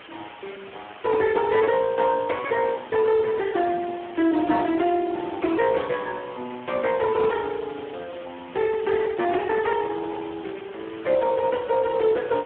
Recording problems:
telephone audio; 240 Hz to 2.6 kHz, Speex
background hiss; SNR 19 dB

